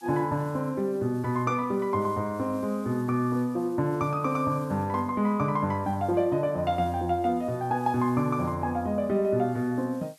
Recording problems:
background hiss; slope +2 dB per octave, SNR 29 dB

